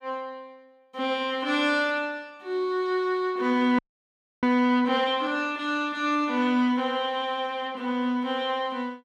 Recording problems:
audio freezing; at 4 s for 0.5 s

